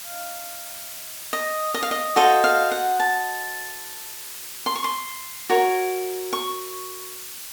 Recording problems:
hiss; slope +3 dB per octave, SNR 11 dB

